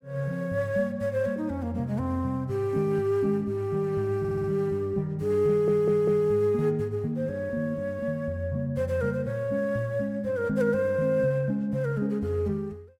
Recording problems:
stutter; at 4 s and at 5.5 s

